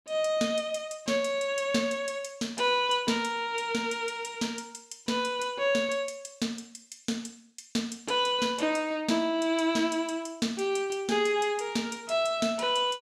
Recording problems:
none

